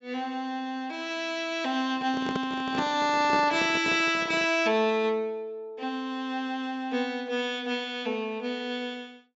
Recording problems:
low-pass filter; nothing above 8 kHz
handling noise; from 2 to 4.5 s; peak 0 dB vs average level

